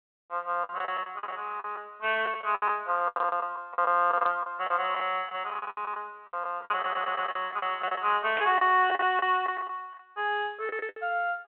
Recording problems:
telephone audio; 260 Hz to 3.3 kHz, G.726
lost packets; 15% of the sound replaced, filled with the last packet
audio stuttering; at 7 s
burst of static; at 8.5 s; peak -2 dB vs average level

